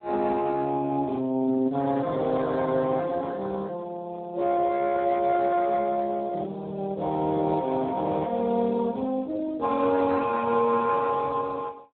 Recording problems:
phone line; 220 Hz to 2.1 kHz, Speex

